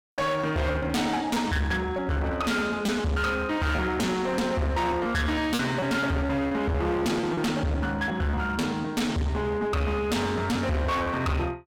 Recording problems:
distorted audio; hard clipping, uneven, signal-to-distortion ratio 5 dB
packet loss; 5% of the sound replaced, filled with repeated pitch periods

